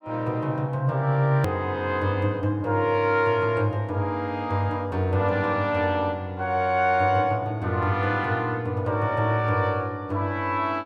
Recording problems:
hard cut with a click; at 1.5 s

